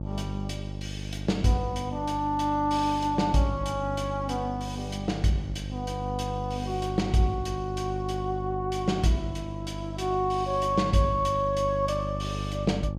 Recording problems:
hum; 50 Hz, harmonics up to 650 Hz, SNR 7 dB

